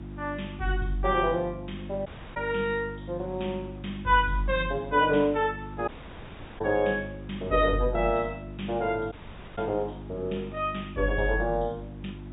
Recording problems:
treble cut off; nothing above 4 kHz
hum; 50 Hz, harmonics up to 350 Hz, SNR 13 dB
background hiss; SNR 27 dB
dropout; at 2 s, at 6 s for 0.5 s and at 9 s

